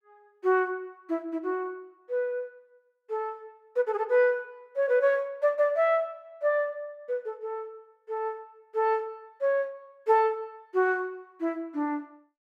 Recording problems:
none

